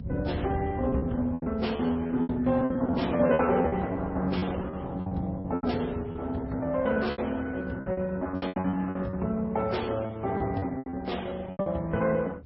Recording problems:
lossy codec; Opus, then MP3, log-spectral distance 3 dB, nothing above 5.5 kHz
rumble; below 130 Hz, SNR 11 dB
lost packets; 15% of the sound replaced, filled with repeated pitch periods

